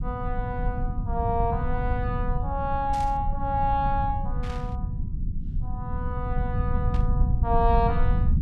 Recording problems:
low-frequency rumble; below 100 Hz, SNR 0 dB
burst of static; at 3 s, at 4.5 s and at 7 s; peak -10 dB vs average level

